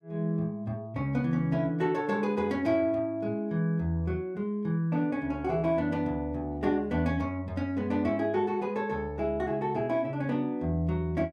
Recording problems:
none

